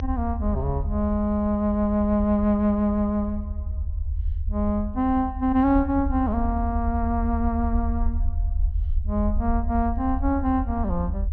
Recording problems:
treble cut off; nothing above 6.2 kHz
low-frequency rumble; below 78 Hz, SNR 5 dB

